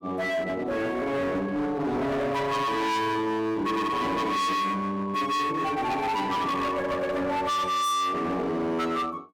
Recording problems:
distortion; hard clipping, uneven, signal-to-distortion ratio 6 dB

